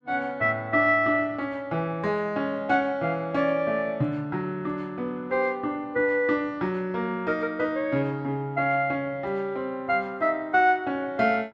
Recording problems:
none

